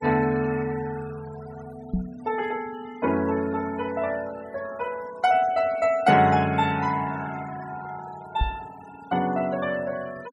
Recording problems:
noise reduction artefacts; signal-to-artefact ratio 19 dB
microphone thump; at 2 s and at 8.5 s; peak +4 dB vs average level

